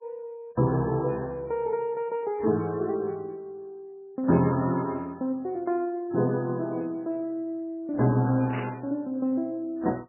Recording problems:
codec artefacts; MP3, log-spectral distance 2 dB, nothing above 2.3 kHz
burst of static; at 8.5 s; peak -6 dB vs average level

